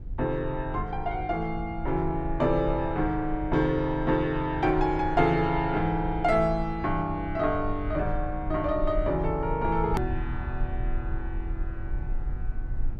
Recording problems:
low-frequency rumble; below 62 Hz, SNR 9 dB
hard cut with a click; at 10 s

